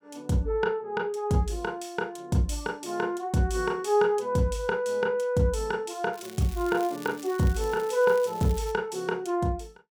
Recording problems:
crackle; from 6 to 8.5 s; loose cable, SNR 19 dB

